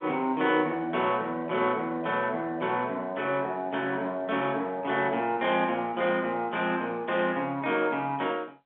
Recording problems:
phone line; 280 Hz to 3.5 kHz, G.711

